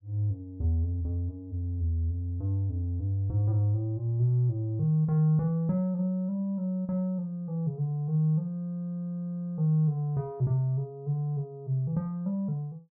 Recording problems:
none

